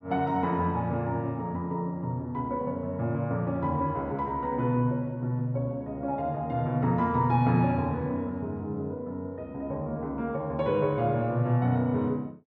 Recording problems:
none

